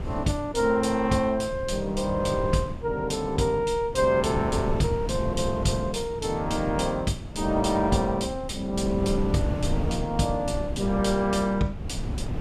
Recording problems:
wind noise; below 190 Hz, SNR 8 dB

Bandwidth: 14.5 kHz